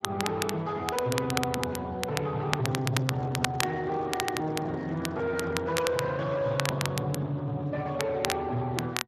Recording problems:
lossy compression; Speex, log-spectral distance 3 dB
distorted audio; soft clipping, signal-to-distortion ratio 11 dB
crackle; vinyl, SNR 5 dB
handling noise; from 2.5 to 6 s; peak -3 dB vs average level

